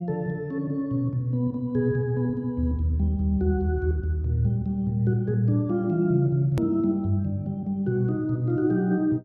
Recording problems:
edit click; at 6.5 s

